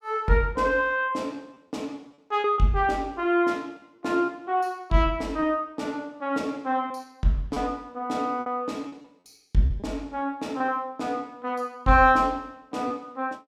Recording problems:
packet loss; 4% of the sound replaced, filled with repeated pitch periods

